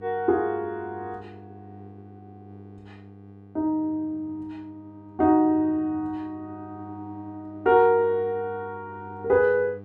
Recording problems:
hum; 50 Hz, harmonics up to 1.2 kHz, SNR 21 dB

